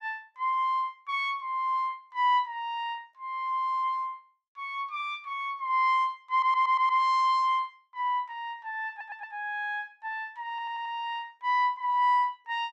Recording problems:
stutter; at 6.5 s, at 9 s and at 11 s

